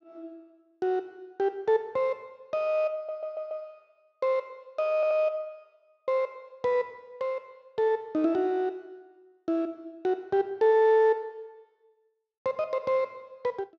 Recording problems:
audio stuttering; at 3 s and at 5 s

